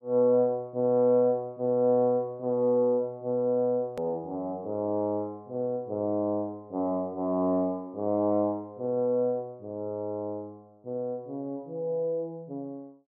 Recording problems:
edit click; at 4 s

